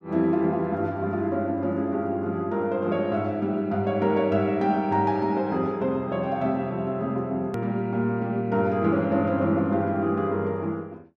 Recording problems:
edit click; at 7.5 s

